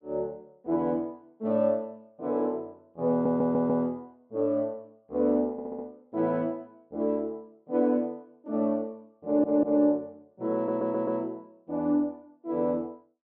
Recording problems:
audio stuttering; 4 times, first at 3 s

